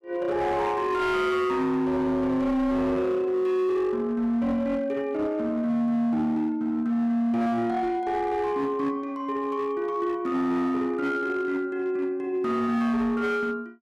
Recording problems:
distorted audio; hard clipping, signal-to-distortion ratio 12 dB

